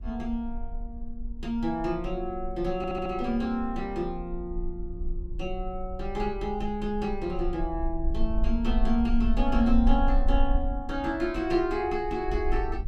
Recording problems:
rumble; below 46 Hz, strongest tone 20 Hz, SNR 5 dB
audio stuttering; at 3 s

